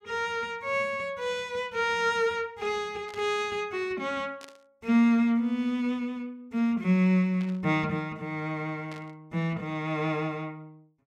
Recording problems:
static burst; 4 times, first at 3 s; peak -13 dB vs average level

